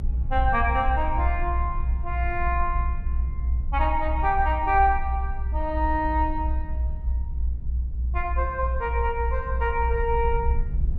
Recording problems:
low-frequency rumble; below 64 Hz, strongest tone 62 Hz, SNR 2 dB

